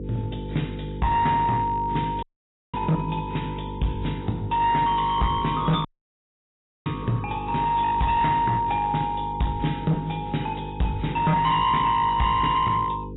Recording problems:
codec artefacts; AAC, log-spectral distance 4 dB, nothing above 3.8 kHz
distortion; hard clipping, uneven, signal-to-distortion ratio 11 dB
electrical hum; 50 Hz, harmonics up to 500 Hz, SNR 11 dB
dropout; at 2 s for 0.5 s and at 6 s for 1 s

